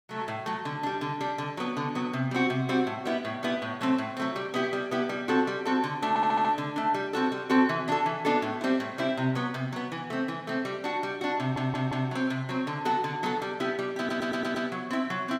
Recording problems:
stutter; at 6 s, at 11 s and at 14 s

